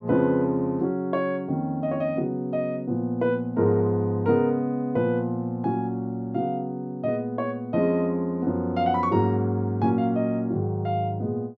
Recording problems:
none

